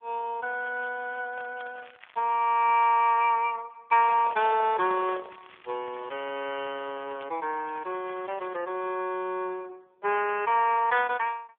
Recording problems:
telephone audio; 320 Hz to 3.1 kHz, AMR-NB
crackling; from 0.5 to 3 s and from 4 to 8.5 s; loose cable, SNR 25 dB
handling noise; from 4 to 5.5 s; peak -10 dB vs average level

